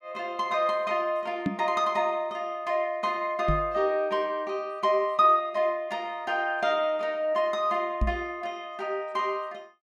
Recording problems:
microphone bump; at 1.5 s, at 3.5 s and at 8 s; peak +4 dB vs average level

